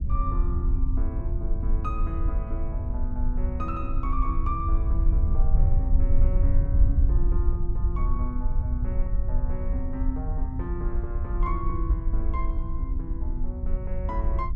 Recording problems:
low-frequency rumble; below 62 Hz, SNR -9 dB

